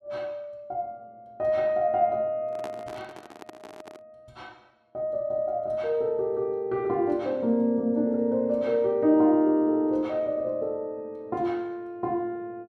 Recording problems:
microphone handling noise; from 2.5 to 4 s; peak -8 dB vs average level

